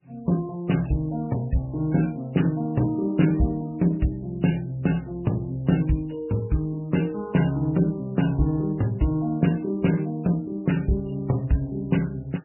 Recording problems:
codec artefacts; MP3, then Vorbis, log-spectral distance 2 dB, nothing above 2.9 kHz

